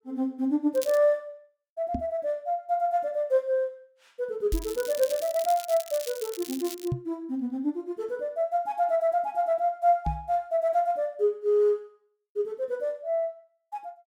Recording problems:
crackle; at 0.5 s and from 4.5 to 7 s; loose cable, SNR 13 dB
microphone thump; 4 times, first at 2 s; peak +2 dB vs average level

